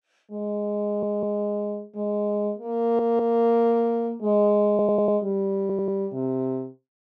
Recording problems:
audio stuttering; 4 times, first at 1 s

